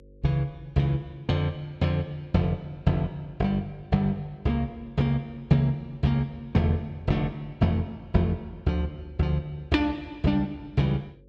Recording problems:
hum; 50 Hz, harmonics up to 550 Hz, SNR 27 dB

